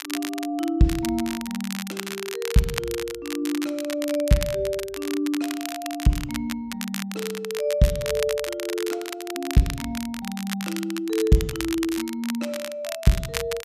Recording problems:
crackling; vinyl, SNR 8 dB

